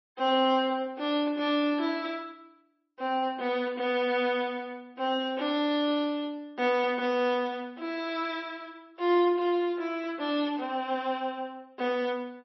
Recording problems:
codec artefacts; MP3, log-spectral distance 2 dB, nothing above 5.7 kHz

